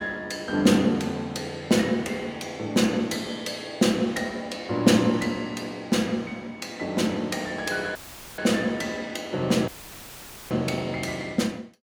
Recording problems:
audio cutting out; at 8 s and at 9.5 s for 1 s; filled with static

